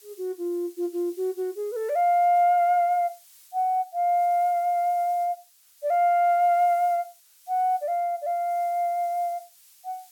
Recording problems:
background hiss; slope +5 dB per octave, SNR 27 dB

